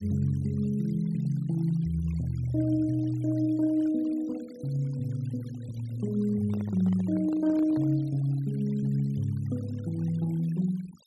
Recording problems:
denoising artefacts; signal-to-artefact ratio 26 dB
handling noise; from 6.5 to 8 s; peak -10 dB vs average level

